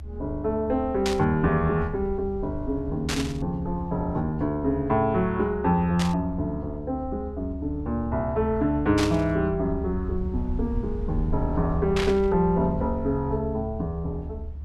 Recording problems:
rumble; below 74 Hz, strongest tone 72 Hz, SNR 9 dB
burst of static; 5 times, first at 1 s; peak +1 dB vs average level

